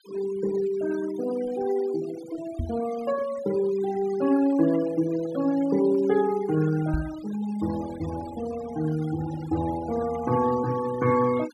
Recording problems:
noise reduction artefacts; signal-to-artefact ratio 17 dB
microphone thump; at 2.5 s and at 7 s; peak +1 dB vs average level

